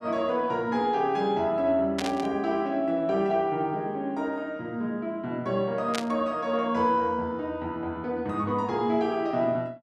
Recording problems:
static burst; at 2 s and at 6 s; peak -1 dB vs average level

